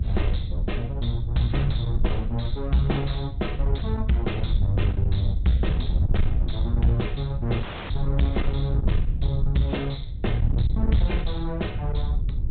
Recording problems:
low-pass filter; nothing above 4 kHz
lossy codec; Vorbis, log-spectral distance 2 dB
distortion; soft clipping, signal-to-distortion ratio 10 dB
wind on the microphone; below 86 Hz, SNR 0 dB
dropout; at 7.5 s

